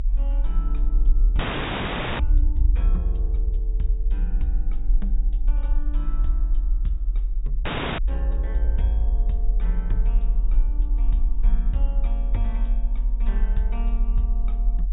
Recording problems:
low-pass filter; nothing above 4 kHz
hum; 60 Hz, harmonics up to 720 Hz, SNR 30 dB
low-frequency rumble; below 42 Hz, strongest tone 40 Hz, SNR -12 dB
audio freezing; at 1.5 s for 1 s and at 7.5 s

